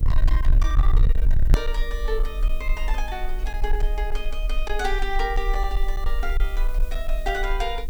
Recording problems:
distortion; hard clipping, uneven, signal-to-distortion ratio 6 dB
hum; 50 Hz, harmonics up to 500 Hz, SNR 17 dB
background hiss; SNR 20 dB
low-frequency rumble; below 42 Hz, SNR -5 dB
hard cut with a click; at 1.5 s

